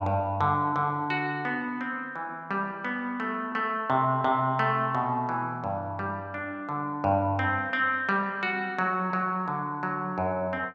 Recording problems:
none

